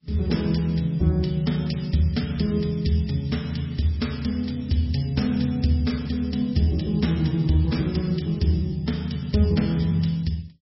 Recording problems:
codec artefacts; MP3, log-spectral distance 5 dB, nothing above 5.5 kHz

